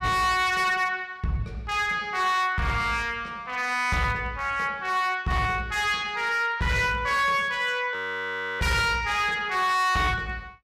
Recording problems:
distorted audio; hard clipping, signal-to-distortion ratio 11 dB
audio freezing; at 8 s for 0.5 s

